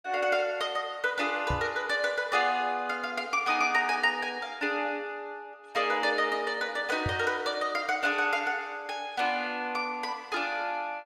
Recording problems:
microphone bump; at 1.5 s and at 7 s; peak 0 dB vs average level

